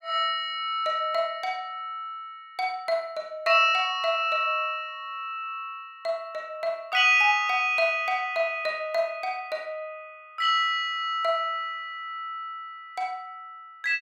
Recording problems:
none

